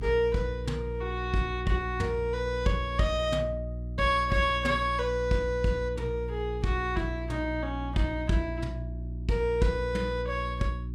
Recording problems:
hum; 60 Hz, harmonics up to 360 Hz, SNR 7 dB

